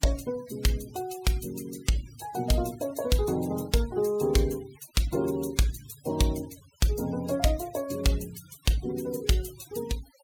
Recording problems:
noise reduction artefacts; signal-to-artefact ratio 19 dB

